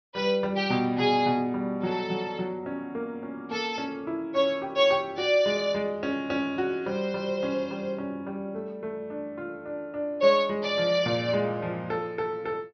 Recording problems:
treble missing; nothing above 6.2 kHz

